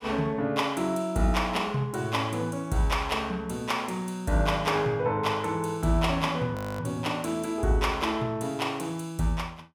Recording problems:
frozen audio; at 6.5 s

